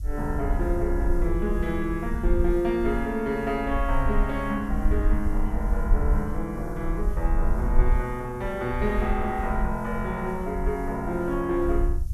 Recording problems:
background hiss; SNR 28 dB
low-frequency rumble; below 52 Hz, SNR 2 dB

